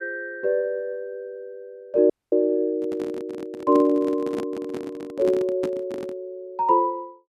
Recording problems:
dropout; at 2 s
microphone handling noise; from 2.5 to 6 s; peak -2 dB vs average level

